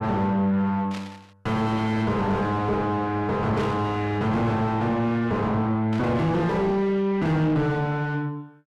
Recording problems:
distorted audio; soft clipping, signal-to-distortion ratio 3 dB
static burst; at 1 s, at 3.5 s and at 6 s; peak -10 dB vs average level

